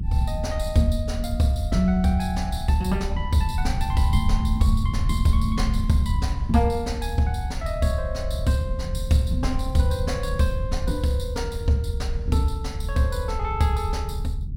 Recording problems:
rumble; below 82 Hz, SNR 3 dB

